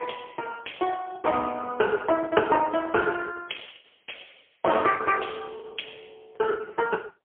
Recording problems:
telephone audio; 260 Hz to 3.3 kHz, AMR-NB, then MP3
packet loss; 9% of the sound replaced, filled with the last packet

